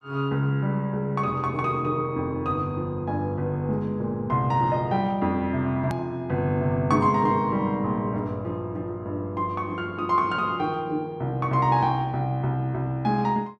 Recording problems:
hard cut with a click; at 6 s

